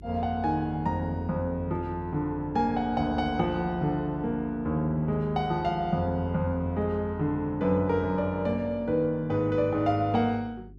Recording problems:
hum; 50 Hz, harmonics up to 400 Hz, SNR 20 dB

